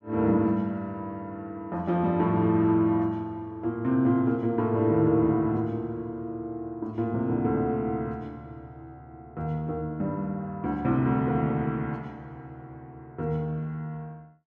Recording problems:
none

